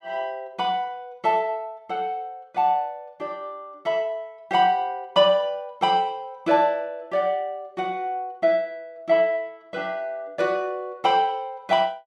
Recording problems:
none

